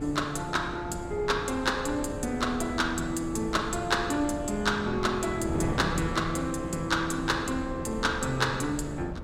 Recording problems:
wind noise; below 410 Hz, SNR 8 dB

